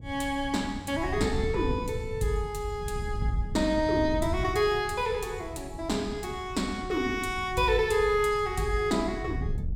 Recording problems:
wind on the microphone; below 120 Hz, SNR 10 dB

